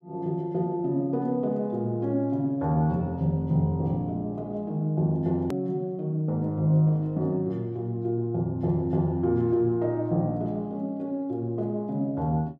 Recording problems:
edit click; at 5.5 s

